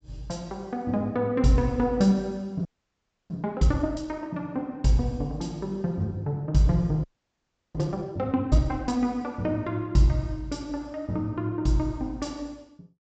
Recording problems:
low-pass filter; nothing above 8 kHz
frozen audio; at 2.5 s for 0.5 s and at 7 s for 0.5 s

